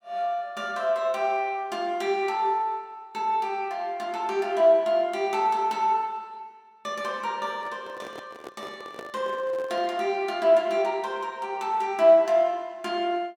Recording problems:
handling noise; from 7.5 to 10 s; peak -10 dB vs average level

